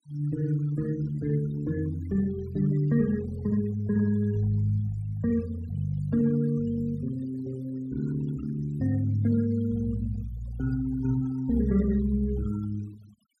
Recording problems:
denoising artefacts; signal-to-artefact ratio 22 dB

